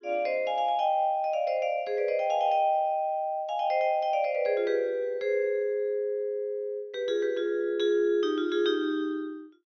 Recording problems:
treble missing; nothing above 6.3 kHz

